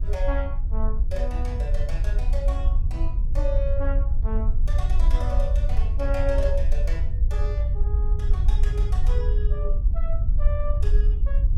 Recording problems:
low-frequency rumble; below 56 Hz, SNR -9 dB

